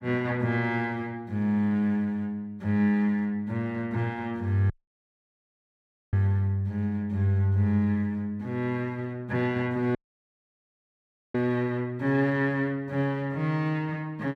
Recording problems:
audio cutting out; at 4.5 s for 1.5 s and at 10 s for 1.5 s

